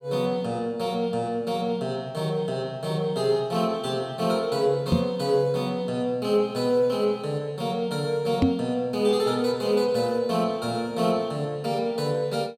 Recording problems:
knock on the microphone; at 5 s and at 8.5 s; peak +8 dB vs average level

